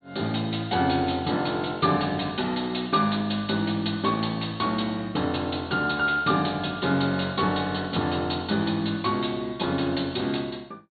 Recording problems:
treble missing; nothing above 4.4 kHz

